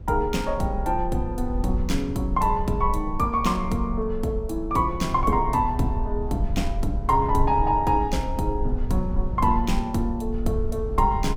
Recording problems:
low-frequency rumble; below 62 Hz, SNR 7 dB

